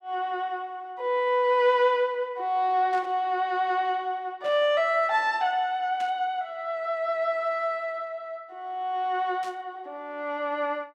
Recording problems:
static burst; 4 times, first at 3 s; peak -13 dB vs average level

